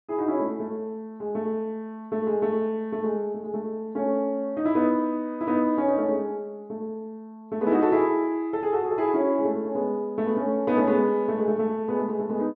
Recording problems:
none

